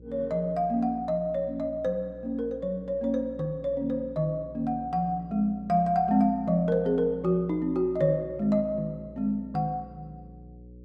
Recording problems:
hum; 60 Hz, harmonics up to 540 Hz, SNR 21 dB

